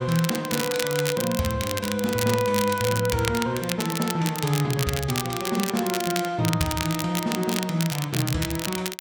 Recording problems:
crackling; vinyl, SNR 5 dB

